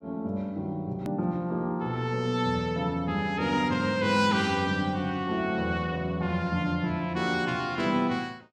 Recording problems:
edit click; at 1 s

